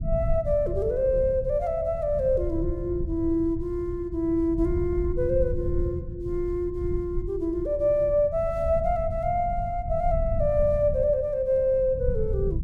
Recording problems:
rumble; below 98 Hz, SNR 8 dB

